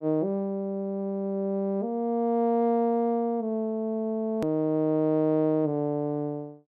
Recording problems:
edit click; at 4.5 s

